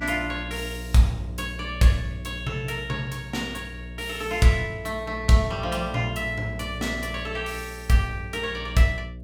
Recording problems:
hum; 60 Hz, harmonics up to 660 Hz, SNR 12 dB

